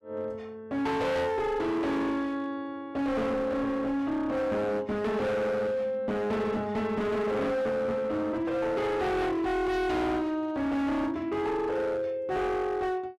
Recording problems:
distortion; hard clipping, signal-to-distortion ratio 7 dB

